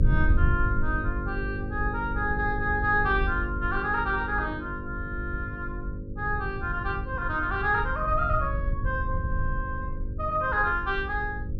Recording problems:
hum; 50 Hz, harmonics up to 550 Hz, SNR 9 dB
low-frequency rumble; below 90 Hz, SNR 5 dB

